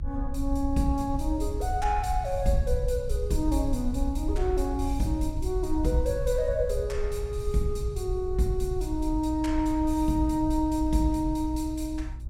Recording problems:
hum; 60 Hz, harmonics up to 840 Hz, SNR 20 dB
low-frequency rumble; below 62 Hz, SNR 5 dB

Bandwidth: 17 kHz